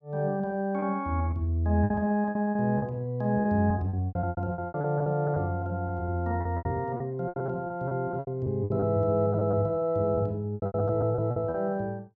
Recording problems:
packet loss; 15% of the sound replaced, filled with repeated pitch periods

